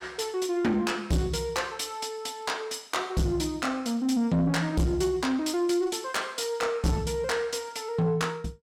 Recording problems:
distortion; soft clipping, signal-to-distortion ratio 8 dB

